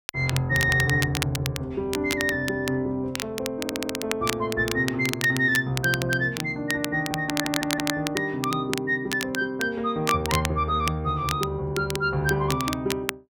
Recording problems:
crackling; vinyl, SNR 7 dB
audio stuttering; at 3.5 s and at 7.5 s

